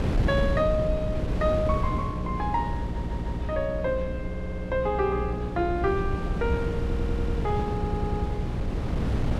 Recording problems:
electrical hum; 60 Hz, harmonics up to 600 Hz, SNR 5 dB
wind on the microphone; below 210 Hz, SNR 2 dB
audio stuttering; 4 times, first at 3 s

